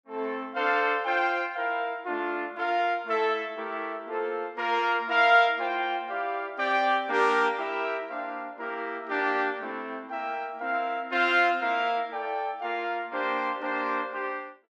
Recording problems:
none

